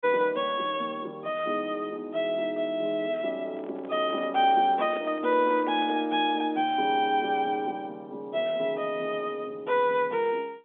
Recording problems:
phone line; 240 Hz to 3.7 kHz, G.711
microphone handling noise; from 3.5 to 6 s; peak -7 dB vs average level

